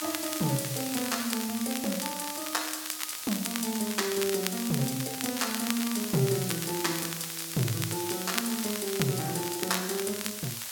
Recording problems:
hiss; slope +2 dB per octave, SNR 4 dB
crackle; vinyl, SNR 6 dB

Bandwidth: 17 kHz